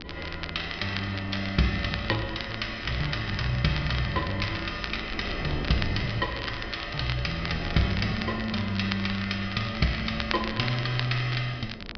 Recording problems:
treble cut off; nothing above 5.5 kHz
wind on the microphone; below 360 Hz, SNR 13 dB
crackling; vinyl, SNR 10 dB

